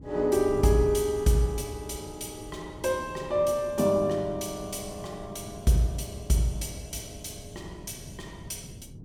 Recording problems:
wind on the microphone; below 210 Hz, SNR 16 dB

